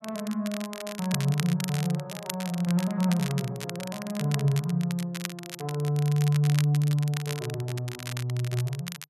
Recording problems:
crackle; vinyl, SNR 11 dB

